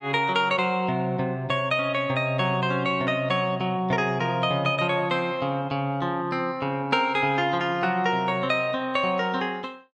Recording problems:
none

